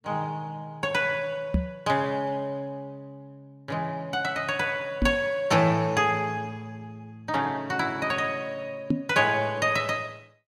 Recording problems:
microphone bump; at 1.5 s, at 5 s and at 9 s; peak +6 dB vs average level

